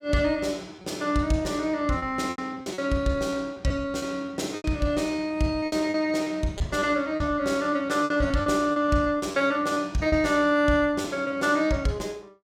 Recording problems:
lost packets; 10% of the sound replaced, filled with repeated pitch periods

